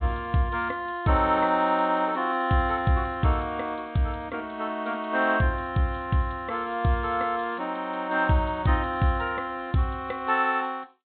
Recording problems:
treble cut off; nothing above 4 kHz

